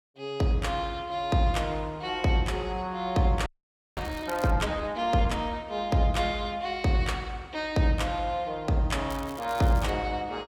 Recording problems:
crackle; from 3.5 to 4.5 s and at 9 s; loose cable, SNR 20 dB
audio freezing; at 3.5 s for 0.5 s

